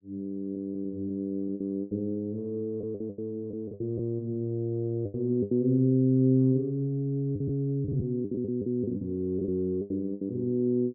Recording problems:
packet loss; 10% of the sound replaced, filled with the last packet

